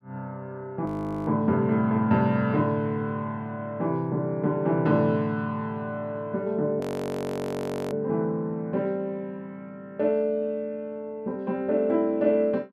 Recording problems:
audio freezing; at 1 s and at 7 s for 1 s

